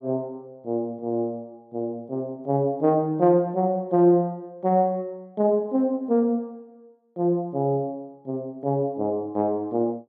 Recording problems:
none

